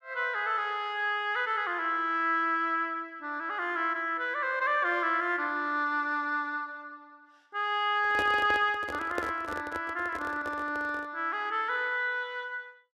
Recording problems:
microphone handling noise; from 8 to 11 s; peak -1 dB vs average level

